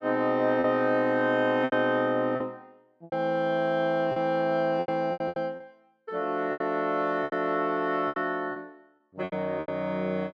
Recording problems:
packet loss; 11% of the sound replaced, filled with repeated pitch periods

